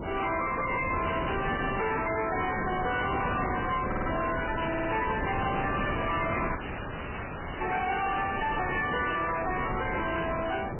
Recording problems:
codec artefacts; MP3, then MP3, log-spectral distance 10 dB, nothing above 2.9 kHz
distorted audio; soft clipping, signal-to-distortion ratio 7 dB
wind noise; below 1.1 kHz, SNR 4 dB
audio stuttering; at 4 s and at 4.5 s
dropout; at 6.5 s for 1 s

